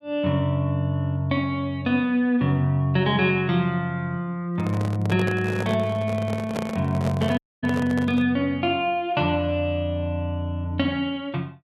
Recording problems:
handling noise; from 4.5 to 8.5 s; peak -2 dB vs average level
audio cutting out; at 7.5 s

